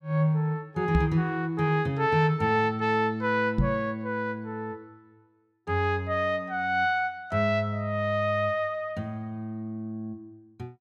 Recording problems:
knock on the microphone; at 1 s and at 3.5 s; peak +5 dB vs average level

